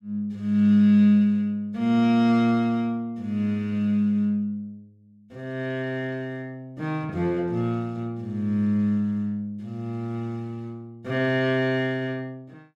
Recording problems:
none

